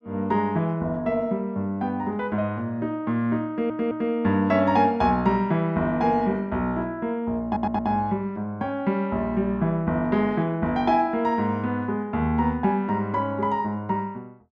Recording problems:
audio stuttering; at 3.5 s and at 7.5 s

